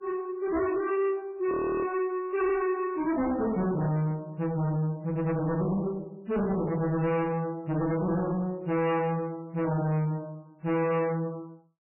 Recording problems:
lossy codec; MP3, log-spectral distance 2 dB, nothing above 2.3 kHz
distortion; soft clipping, signal-to-distortion ratio 7 dB
frozen audio; at 1.5 s
burst of static; 4 times, first at 2 s; peak -17 dB vs average level

